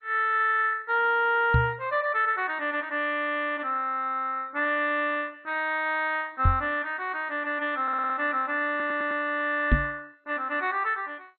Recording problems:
codec artefacts; MP2, log-spectral distance 3 dB, nothing above 3.6 kHz
knock on the microphone; at 1.5 s, at 6.5 s and at 9.5 s; peak +7 dB vs average level
stutter; at 8 s and at 8.5 s

